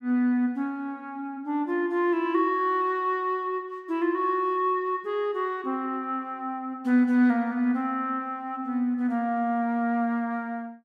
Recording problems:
none

